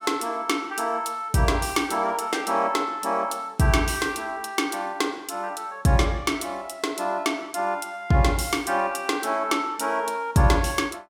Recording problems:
none

